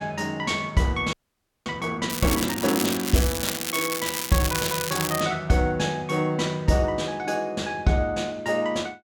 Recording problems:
audio freezing; at 1 s for 0.5 s
crackle; from 2 to 5 s; loose cable, SNR 3 dB

